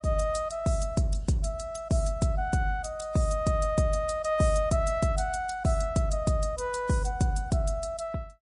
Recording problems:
lossy codec; MP3, log-spectral distance 2 dB, nothing above 10.4 kHz

